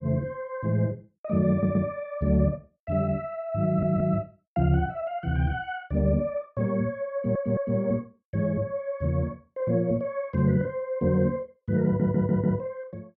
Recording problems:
stutter; 4 times, first at 1.5 s

